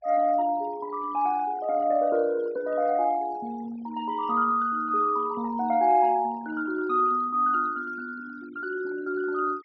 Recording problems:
treble missing; nothing above 5.8 kHz
noise reduction artefacts; signal-to-artefact ratio 25 dB

